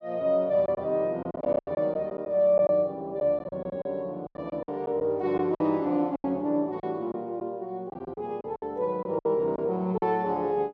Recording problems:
packet loss; 11% of the sound replaced, filled with silence

